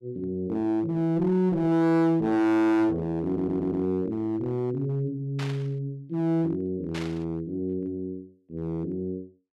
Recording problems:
distorted audio; hard clipping, uneven, signal-to-distortion ratio 5 dB
audio stuttering; at 3.5 s
burst of static; at 5.5 s and at 7 s; peak -7 dB vs average level

